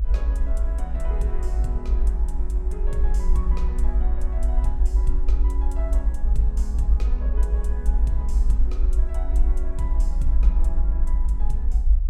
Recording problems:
rumble; below 54 Hz, SNR -12 dB
wind on the microphone; below 730 Hz, SNR 22 dB

